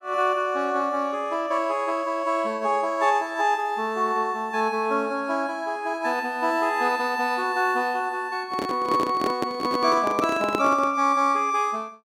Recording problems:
handling noise; from 8.5 to 11 s; peak +1 dB vs average level

